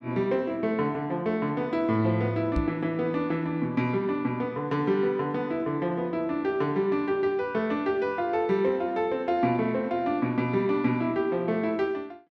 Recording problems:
microphone bump; at 2.5 s; peak +1 dB vs average level

